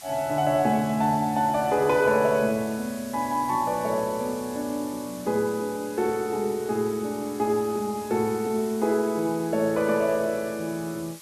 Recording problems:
background hiss; slope +2 dB per octave, SNR 17 dB

